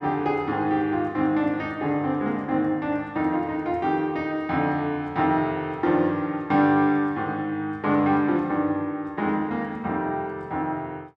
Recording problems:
none

